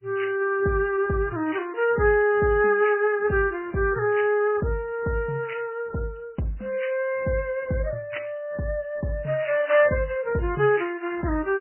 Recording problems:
lossy compression; MP3, log-spectral distance 3 dB, nothing above 2.8 kHz

